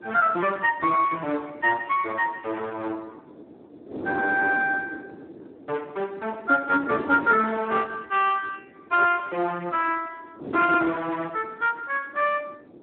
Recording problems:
telephone audio; 240 Hz to 3.5 kHz, Speex
wind on the microphone; below 430 Hz, SNR 15 dB

